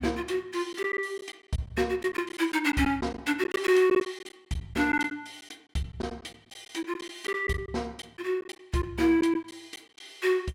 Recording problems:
lost packets; 8% of the sound replaced, filled with silence

